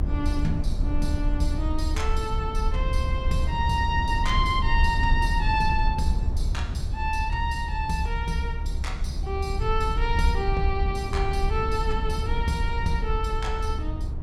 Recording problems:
rumble; below 72 Hz, SNR 0 dB

